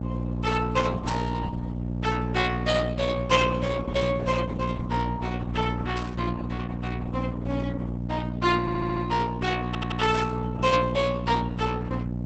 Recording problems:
codec artefacts; Opus, then Opus, log-spectral distance 4 dB, nothing above 8 kHz
hum; 60 Hz, harmonics up to 900 Hz, SNR 4 dB
burst of static; 4 times, first at 1 s; peak -7 dB vs average level
stutter; at 8.5 s and at 9.5 s

